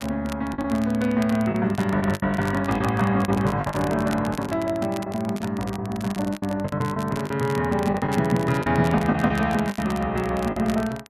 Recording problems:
crackling; vinyl, SNR 17 dB
lost packets; 11% of the sound replaced, filled with the last packet

